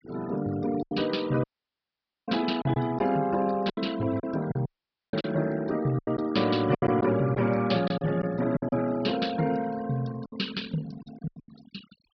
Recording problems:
treble missing; nothing above 5.5 kHz
noise reduction artefacts; signal-to-artefact ratio 17 dB
lost packets; 9% of the sound replaced, filled with silence
dropout; at 1.5 s for 1 s and at 4.5 s

